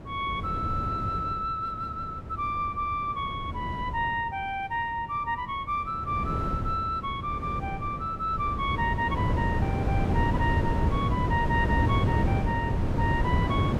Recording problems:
wind on the microphone; below 270 Hz, SNR 0 dB

